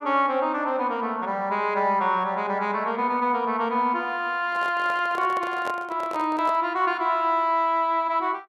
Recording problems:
microphone handling noise; from 4.5 to 6.5 s; peak -5 dB vs average level

